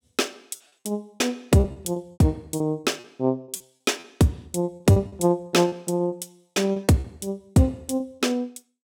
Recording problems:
packet loss; 12% of the sound replaced, filled with repeated pitch periods

